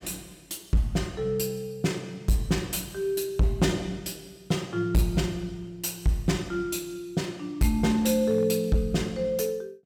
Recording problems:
distortion; hard clipping, signal-to-distortion ratio 11 dB

